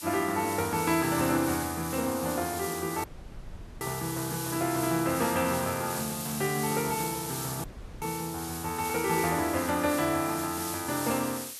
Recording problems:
hiss; slope +3 dB per octave, SNR 6 dB
audio cutting out; at 3 s for 1 s and at 7.5 s

